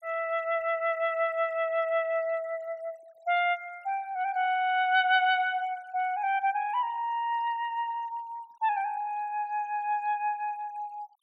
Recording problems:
denoising artefacts; signal-to-artefact ratio 28 dB

